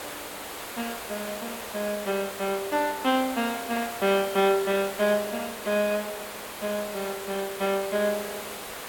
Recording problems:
background hiss; SNR 8 dB

